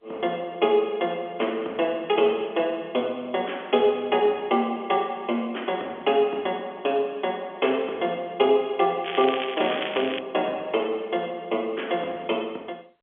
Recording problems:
phone line; 280 Hz to 3.4 kHz, G.711
crackle; from 9 to 10 s; loose cable, SNR 8 dB

